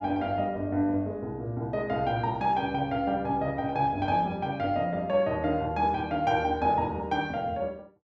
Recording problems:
none

